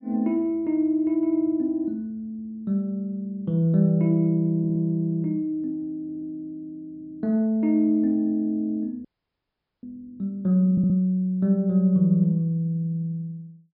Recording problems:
treble missing; nothing above 5.5 kHz
stutter; 4 times, first at 4.5 s
audio freezing; at 9 s for 1 s

